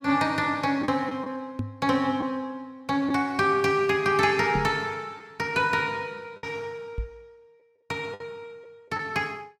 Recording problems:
packet loss; 3% of the sound replaced, filled with the last packet
microphone thump; at 1.5 s, at 4.5 s and at 7 s; peak 0 dB vs average level

